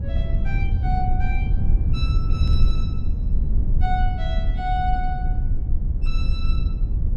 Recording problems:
rumble; below 74 Hz, SNR -8 dB
burst of static; at 2.5 s; peak -15 dB vs average level

